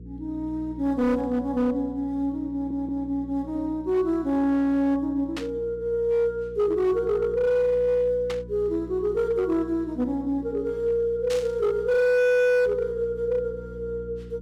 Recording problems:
distorted audio; hard clipping, uneven, signal-to-distortion ratio 11 dB
electrical hum; 60 Hz, harmonics up to 480 Hz, SNR 18 dB
audio stuttering; at 2.5 s
static burst; at 5.5 s, at 8.5 s and at 11 s; peak -6 dB vs average level

